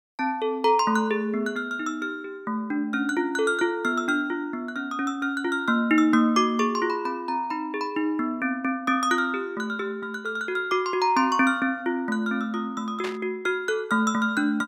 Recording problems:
burst of static; at 13 s; peak -5 dB vs average level

